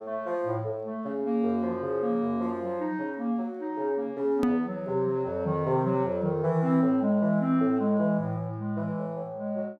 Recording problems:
click at an edit; at 4.5 s

